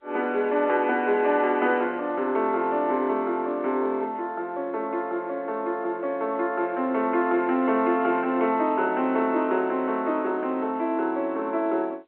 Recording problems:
phone line; 240 Hz to 3.6 kHz, G.711

